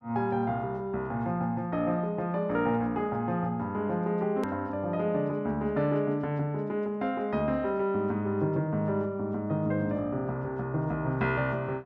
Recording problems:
click at an edit; at 4.5 s

